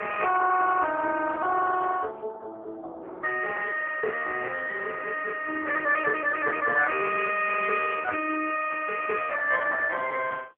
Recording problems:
telephone audio; 390 Hz to 3.1 kHz, AMR-NB

